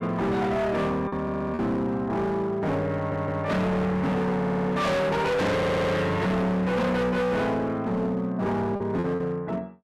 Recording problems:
distorted audio; hard clipping, signal-to-distortion ratio 6 dB
packet loss; 2% of the sound replaced, filled with repeated pitch periods
stutter; 4 times, first at 1 s

